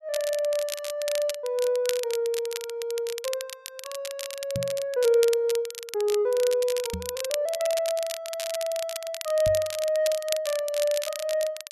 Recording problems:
crackling; vinyl, SNR 9 dB
knock on the microphone; at 4.5 s, at 7 s and at 9.5 s; peak -2 dB vs average level

